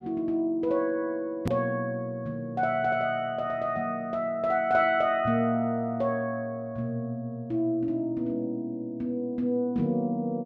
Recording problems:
click at an edit; at 1.5 s

